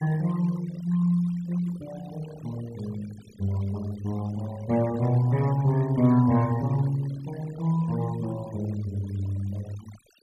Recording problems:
denoising artefacts; signal-to-artefact ratio 20 dB

